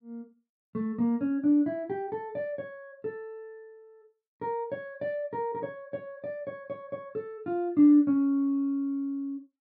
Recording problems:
none

